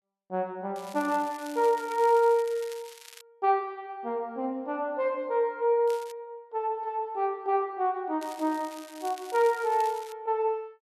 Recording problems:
crackle; from 1 to 3 s, at 6 s and from 8 to 10 s; loose cable, SNR 19 dB

